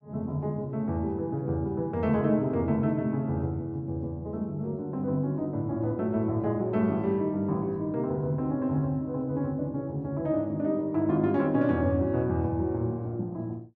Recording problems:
none

